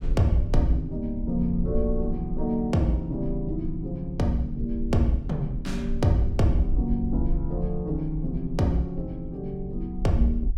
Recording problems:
rumble; below 52 Hz, strongest tone 20 Hz, SNR 7 dB

